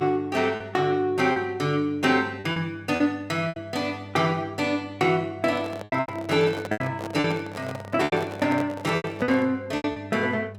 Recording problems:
hum; 50 Hz, harmonics up to 800 Hz, SNR 18 dB
packet loss; 8% of the sound replaced, filled with repeated pitch periods
handling noise; from 5.5 to 9.5 s; peak -5 dB vs average level

